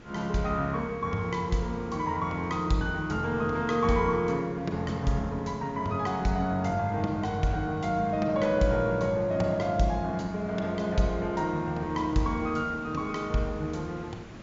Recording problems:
treble missing; nothing above 7.4 kHz
hiss; slope -6 dB per octave, SNR 18 dB

